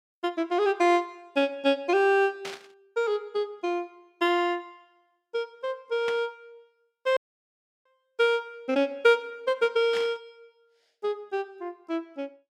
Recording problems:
burst of static; at 2.5 s, at 6 s and at 10 s; peak -6 dB vs average level
dropout; at 7 s for 0.5 s

